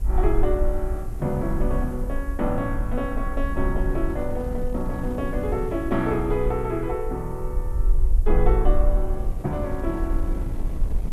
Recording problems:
hiss; slope 0 dB per octave, SNR 27 dB
rumble; below 44 Hz, strongest tone 22 Hz, SNR 2 dB
wind on the microphone; below 180 Hz, SNR 9 dB

